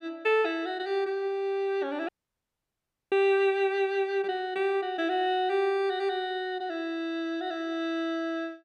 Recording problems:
dropout; at 2 s for 1 s

